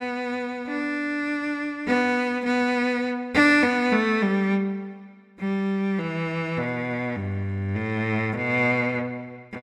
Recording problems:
none

